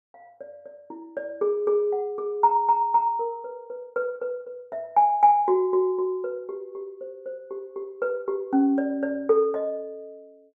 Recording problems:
none

